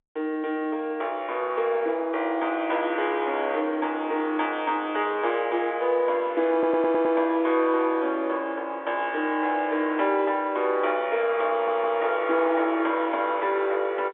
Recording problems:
telephone audio; 280 Hz to 3.6 kHz, G.711
stutter; at 6.5 s and at 12 s

